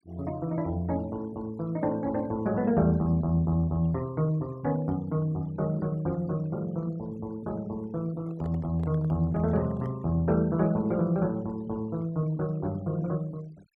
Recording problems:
noise reduction artefacts; signal-to-artefact ratio 26 dB
handling noise; from 8 to 10 s; peak -12 dB vs average level

